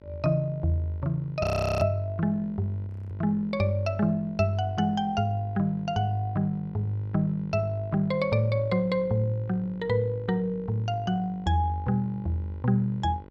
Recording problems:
hum; 50 Hz, harmonics up to 2 kHz, SNR 21 dB
frozen audio; at 1.5 s and at 3 s

